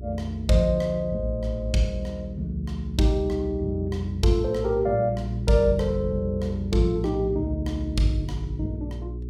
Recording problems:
electrical hum; 60 Hz, harmonics up to 420 Hz, SNR 11 dB

